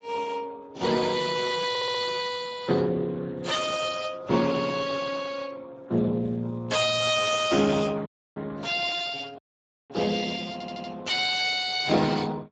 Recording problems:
lossy codec; AAC, then Speex, log-spectral distance 6 dB, nothing above 7.6 kHz
stutter; at 1.5 s and at 11 s
audio cutting out; at 8 s and at 9.5 s for 0.5 s

